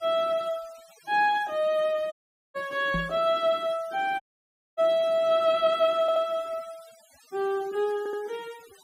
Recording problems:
noise reduction artefacts; signal-to-artefact ratio 25 dB
dropout; at 2 s and at 4 s for 0.5 s
microphone thump; at 3 s; peak -2 dB vs average level
audio stuttering; at 6 s and at 8 s

